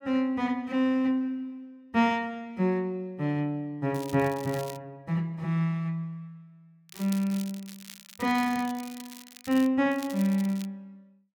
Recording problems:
crackle; at 4 s, from 7 to 9.5 s and at 10 s; loose cable, SNR 17 dB

